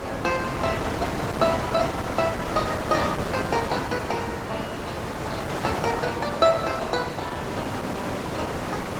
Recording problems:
lossy codec; Opus, log-spectral distance 5 dB
wind on the microphone; below 1.3 kHz, SNR 3 dB

